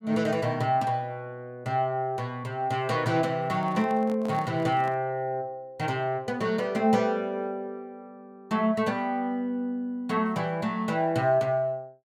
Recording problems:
microphone handling noise; from 3.5 to 5 s; peak -10 dB vs average level

